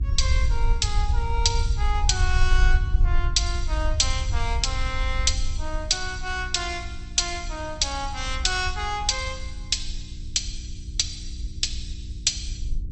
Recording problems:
lossy compression; MP2, log-spectral distance 3 dB, nothing above 8 kHz
hum; 60 Hz, harmonics up to 360 Hz, SNR 16 dB
low-frequency rumble; below 64 Hz, SNR 2 dB

